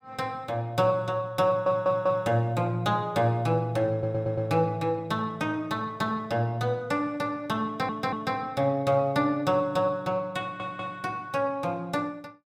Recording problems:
audio stuttering; 4 times, first at 1.5 s

